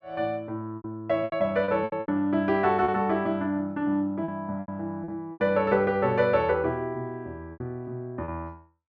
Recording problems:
packet loss; 9% of the sound replaced, filled with repeated pitch periods

